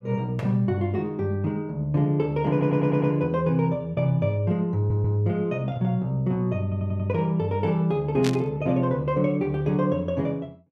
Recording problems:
audio stuttering; at 2.5 s, at 5 s and at 6.5 s
static burst; at 8 s; peak -3 dB vs average level

